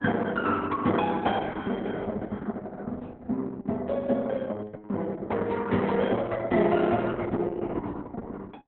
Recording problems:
codec artefacts; Opus, log-spectral distance 4 dB

